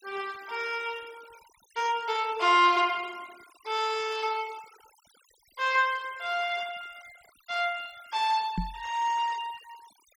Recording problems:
denoising artefacts; signal-to-artefact ratio 22 dB
microphone bump; at 8.5 s; peak +1 dB vs average level

